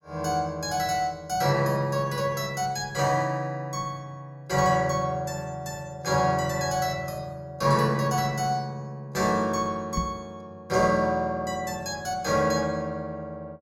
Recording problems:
microphone thump; at 10 s; peak +2 dB vs average level

